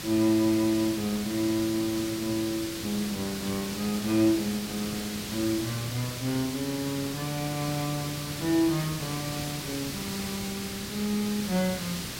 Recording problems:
background hiss; SNR 6 dB

